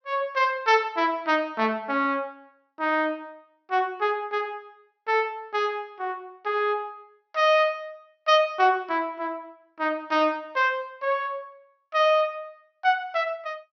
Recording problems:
low-pass filter; nothing above 6 kHz

